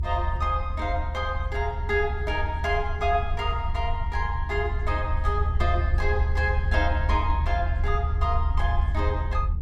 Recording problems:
low-frequency rumble; below 76 Hz, SNR -1 dB

